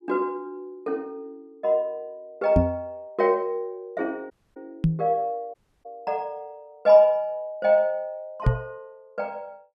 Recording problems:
microphone thump; at 2.5 s, at 5 s and at 8.5 s; peak +8 dB vs average level
audio cutting out; at 4.5 s and at 5.5 s

